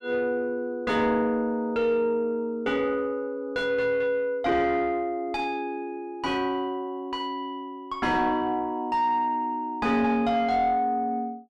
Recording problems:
distortion; soft clipping, signal-to-distortion ratio 11 dB

